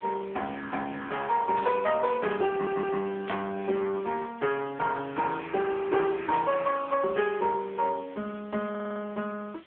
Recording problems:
phone line; 170 Hz to 3.4 kHz, AMR-NB
hiss; SNR 27 dB
burst of static; at 1.5 s, at 3.5 s and at 6.5 s; peak -8 dB vs average level
stutter; at 2.5 s and at 8.5 s

